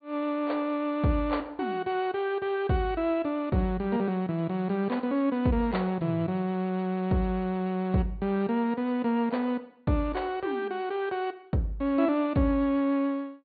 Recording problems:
low-pass filter; nothing above 4.5 kHz

